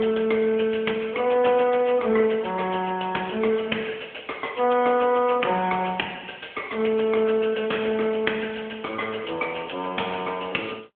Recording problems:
telephone audio; 260 Hz to 3.3 kHz, AMR-NB

